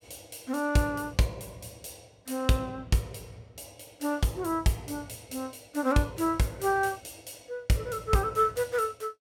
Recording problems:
none

